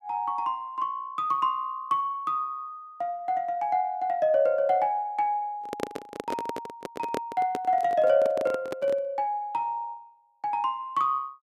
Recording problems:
handling noise; from 5.5 to 9 s; peak +1 dB vs average level

